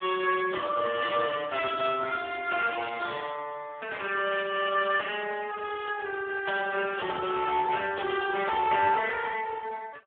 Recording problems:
phone line; 320 Hz to 2.9 kHz, Speex

